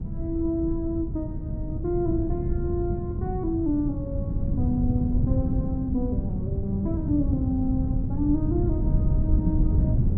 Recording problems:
wind on the microphone; below 150 Hz, SNR -2 dB

